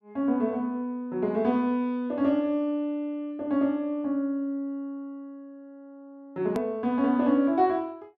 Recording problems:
click at an edit; at 6.5 s

